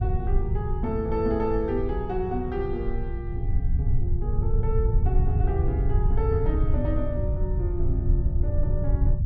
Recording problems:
rumble; below 90 Hz, SNR -4 dB

